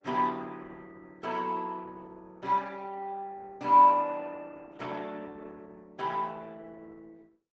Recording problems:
treble missing; nothing above 8 kHz
lossy compression; Opus, log-spectral distance 3 dB

